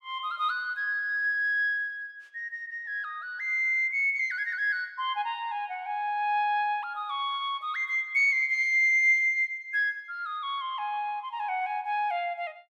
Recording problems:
none

